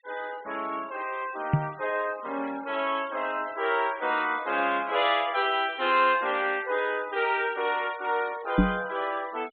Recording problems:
treble missing; nothing above 4 kHz
noise reduction artefacts; signal-to-artefact ratio 20 dB
microphone thump; at 1.5 s and at 8.5 s; peak +9 dB vs average level

